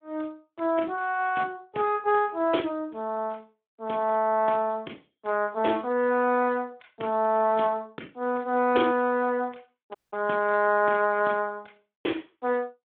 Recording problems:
telephone audio; 220 Hz to 3.4 kHz, Speex
audio cutting out; at 10 s

